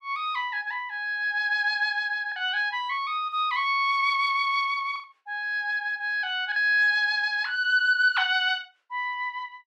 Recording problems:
packet loss; 1.8% of the sound replaced, filled with the last packet

